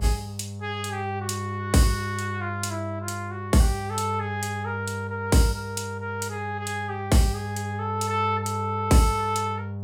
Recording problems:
electrical hum; 50 Hz, harmonics up to 600 Hz, SNR 7 dB

